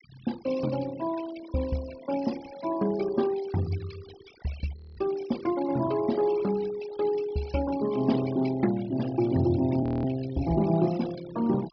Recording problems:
low-pass filter; nothing above 5.5 kHz
noise reduction artefacts; signal-to-artefact ratio 17 dB
frozen audio; at 5 s and at 10 s

